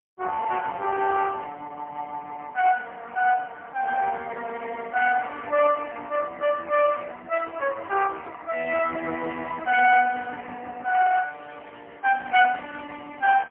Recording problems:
telephone audio; 340 Hz to 2.9 kHz, AMR-NB, then MP3

